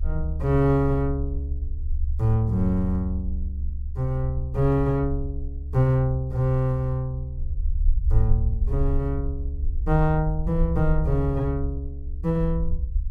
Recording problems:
rumble; below 70 Hz, SNR 4 dB

